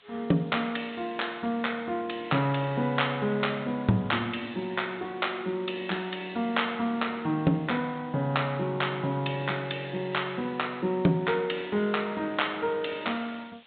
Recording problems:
low-pass filter; nothing above 4 kHz
background hiss; SNR 27 dB

